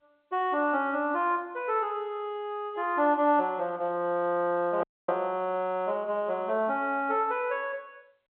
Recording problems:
telephone audio; 190 Hz to 3.5 kHz, G.711
dropout; at 5 s

